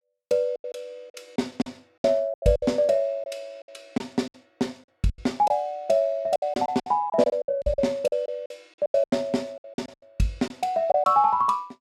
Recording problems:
lost packets; 14% of the sound replaced, filled with silence

